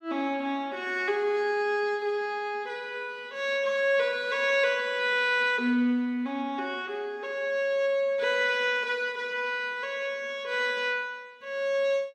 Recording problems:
none

